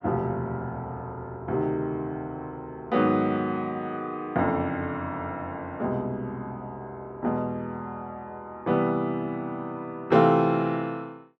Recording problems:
none

